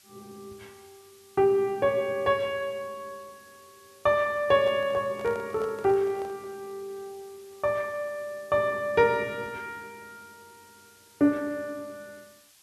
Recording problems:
hiss; slope +2 dB per octave, SNR 27 dB
microphone handling noise; from 4.5 to 6.5 s; peak -11 dB vs average level

